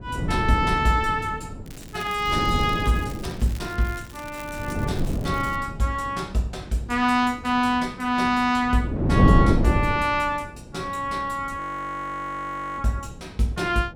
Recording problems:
wind noise; below 280 Hz, SNR 1 dB
crackling; from 1.5 to 5.5 s; loose cable, SNR 20 dB
frozen audio; at 12 s for 1 s

